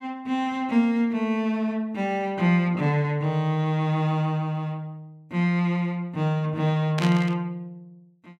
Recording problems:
burst of static; at 7 s; peak -3 dB vs average level

